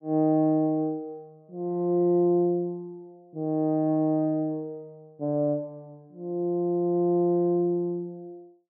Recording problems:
none

